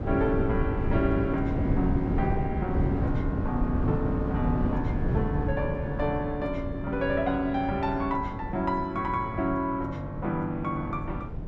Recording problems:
wind on the microphone; below 230 Hz, SNR 1 dB

